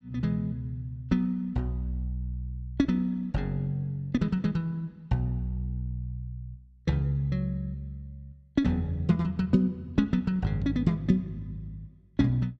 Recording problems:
none

